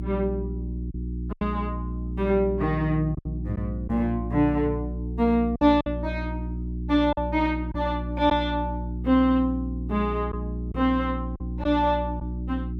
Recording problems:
hum; 60 Hz, harmonics up to 360 Hz, SNR 6 dB
packet loss; 4% of the sound replaced, filled with silence

